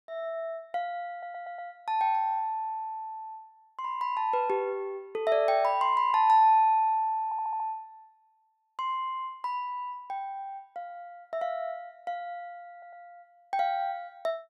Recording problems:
stutter; at 1 s, at 7.5 s and at 13 s

